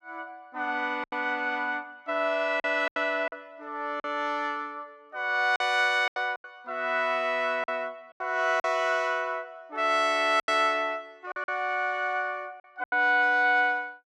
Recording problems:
lost packets; 6% of the sound replaced, filled with silence

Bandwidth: 14.5 kHz